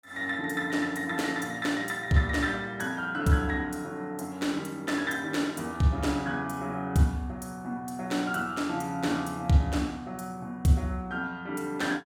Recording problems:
none

